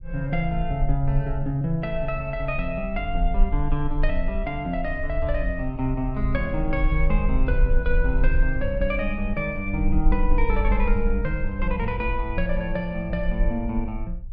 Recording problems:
low-frequency rumble; below 46 Hz, SNR 2 dB

